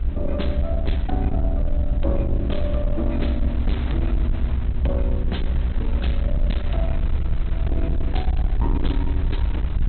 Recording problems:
treble missing; nothing above 4.1 kHz
distorted audio; soft clipping, signal-to-distortion ratio 10 dB
hum; 60 Hz, harmonics up to 420 Hz, SNR 15 dB
rumble; below 68 Hz, SNR -5 dB
wind on the microphone; below 1.6 kHz, SNR 12 dB

